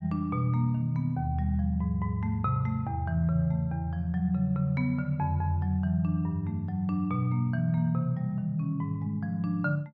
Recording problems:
none

